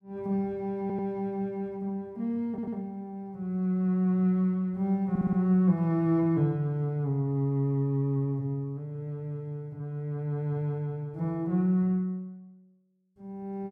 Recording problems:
stutter; at 1 s, at 2.5 s and at 5 s

